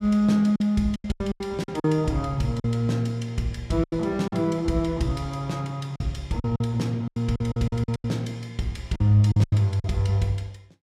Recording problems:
lost packets; 11% of the sound replaced, filled with silence

